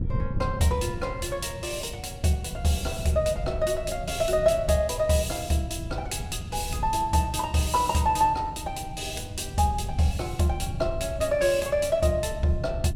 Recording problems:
wind on the microphone; below 130 Hz, SNR 10 dB

